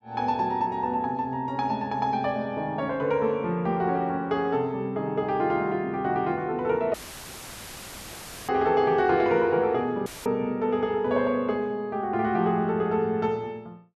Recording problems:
audio cutting out; at 7 s for 1.5 s and at 10 s; filled with static

